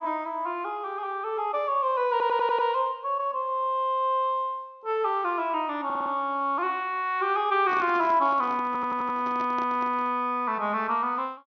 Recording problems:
low-pass filter; nothing above 6.3 kHz
audio stuttering; at 2 s, at 6 s and at 8.5 s
handling noise; from 7.5 to 10 s; peak -9 dB vs average level

